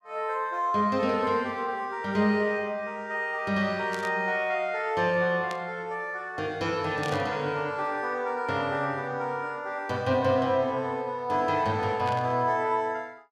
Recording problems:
burst of static; 4 times, first at 4 s; peak -8 dB vs average level

